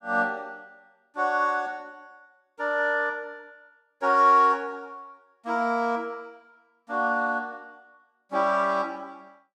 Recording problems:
none

